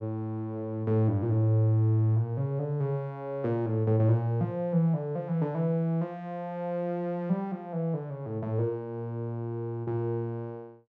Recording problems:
none

